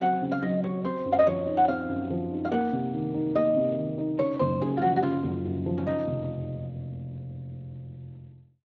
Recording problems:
lossy codec; Speex, log-spectral distance 2 dB

